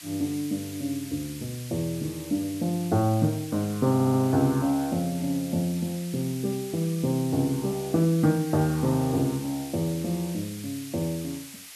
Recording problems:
background hiss; slope +4 dB per octave, SNR 15 dB
stutter; at 4 s

